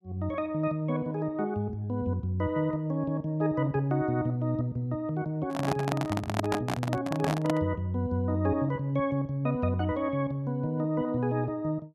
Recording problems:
handling noise; from 5.5 to 7.5 s; peak +4 dB vs average level

